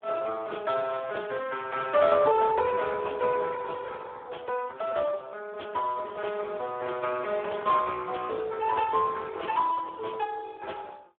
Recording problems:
phone line; 320 Hz to 2 kHz, Speex

